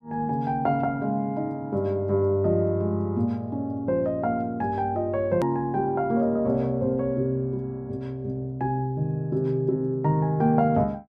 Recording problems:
hard cut with a click; at 5.5 s

